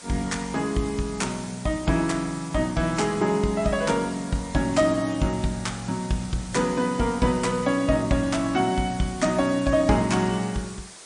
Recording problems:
lossy compression; MP3, log-spectral distance 10 dB, nothing above 8.7 kHz
hiss; slope -1 dB per octave, SNR 17 dB

